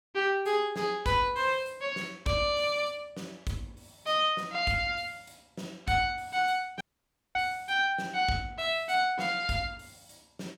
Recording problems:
dropout; at 7 s for 0.5 s

